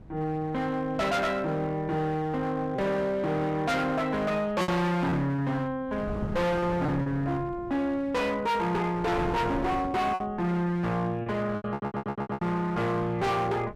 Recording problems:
distortion; hard clipping, signal-to-distortion ratio 7 dB
wind noise; below 350 Hz, SNR 13 dB
packet loss; 4% of the sound replaced, filled with repeated pitch periods
stutter; at 12 s

